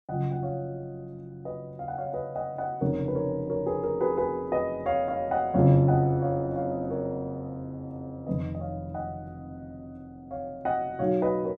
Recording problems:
none

